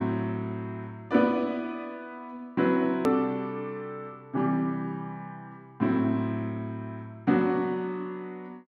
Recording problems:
click at an edit; at 3 s

